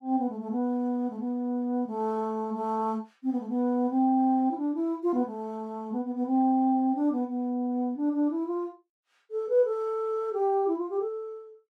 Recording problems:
none

